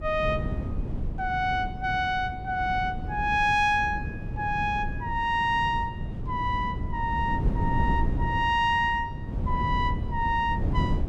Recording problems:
wind on the microphone; below 160 Hz, SNR 6 dB

